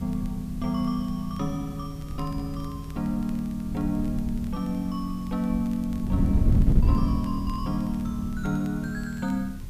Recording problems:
hiss; slope -1 dB per octave, SNR 23 dB
wind noise; below 130 Hz, SNR 2 dB
crackle; vinyl, SNR 28 dB

